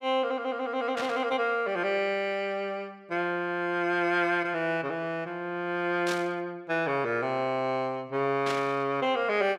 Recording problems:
burst of static; at 1 s, at 6 s and at 8.5 s; peak -2 dB vs average level

